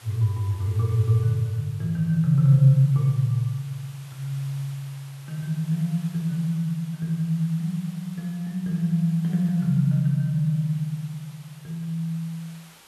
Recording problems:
hiss; slope -1 dB per octave, SNR 25 dB

